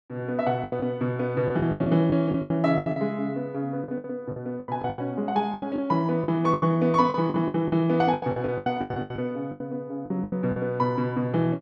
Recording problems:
packet loss; 16% of the sound replaced, filled with the last packet

